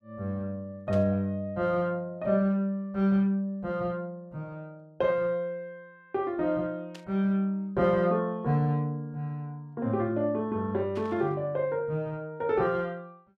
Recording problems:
static burst; at 1 s, at 7 s and at 11 s; peak -13 dB vs average level

